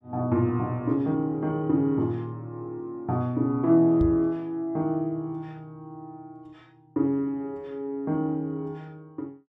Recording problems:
microphone thump; at 4 s; peak +2 dB vs average level

